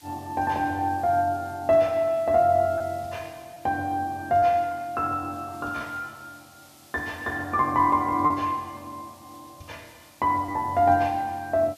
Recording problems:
background hiss; slope +2 dB per octave, SNR 27 dB
lost packets; 1.5% of the sound replaced, filled with repeated pitch periods

